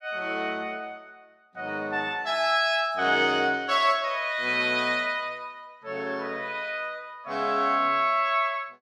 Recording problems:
none

